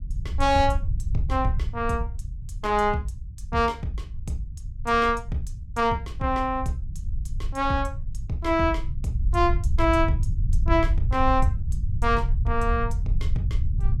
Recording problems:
low-frequency rumble; below 80 Hz, SNR 4 dB

